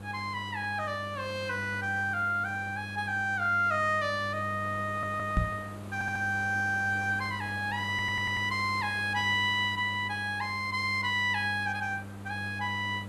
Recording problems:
hum; 50 Hz, harmonics up to 500 Hz, SNR 12 dB
background hiss; SNR 19 dB
stutter; at 5 s, at 6 s and at 8 s
knock on the microphone; at 5.5 s; peak +5 dB vs average level

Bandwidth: 12.5 kHz